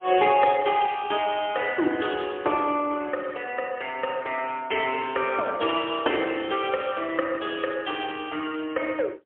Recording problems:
phone line; 260 Hz to 3.3 kHz, AMR-NB, then MP3

